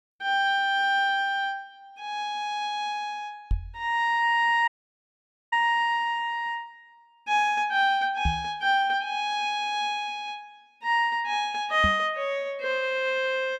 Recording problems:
microphone thump; at 3.5 s, at 8.5 s and at 12 s; peak +2 dB vs average level
dropout; at 4.5 s for 1 s

